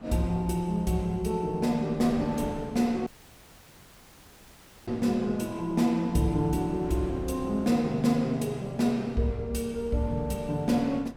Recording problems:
wind on the microphone; below 350 Hz, SNR 17 dB
dropout; at 3 s for 2 s

